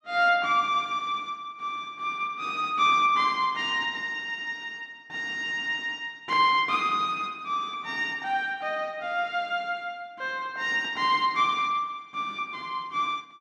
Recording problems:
none

